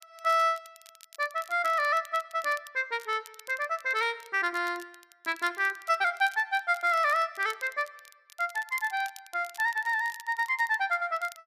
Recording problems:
crackle; vinyl, SNR 22 dB

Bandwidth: 14.5 kHz